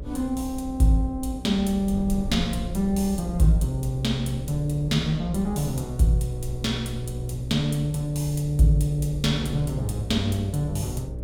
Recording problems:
hum; 60 Hz, harmonics up to 600 Hz, SNR 12 dB
wind noise; below 110 Hz, SNR 14 dB

